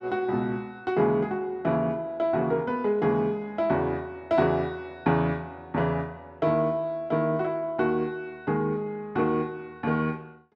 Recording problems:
none

